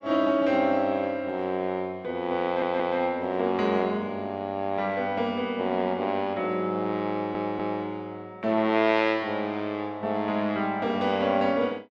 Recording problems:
audio stuttering; at 2.5 s and at 7 s

